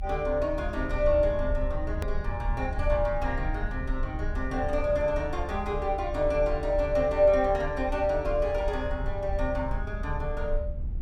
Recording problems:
low-frequency rumble; below 70 Hz, SNR 6 dB
click at an edit; at 2 s

